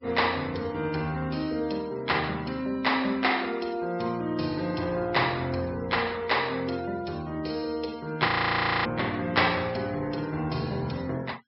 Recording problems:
low-pass filter; nothing above 5.5 kHz
denoising artefacts; signal-to-artefact ratio 23 dB
audio freezing; at 8.5 s for 0.5 s

